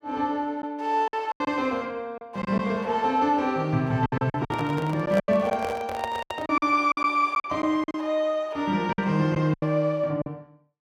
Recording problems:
lost packets; 10% of the sound replaced, filled with silence
microphone handling noise; from 4.5 to 6.5 s; peak -2 dB vs average level

